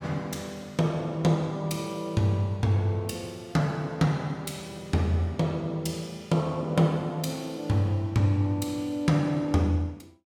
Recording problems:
none

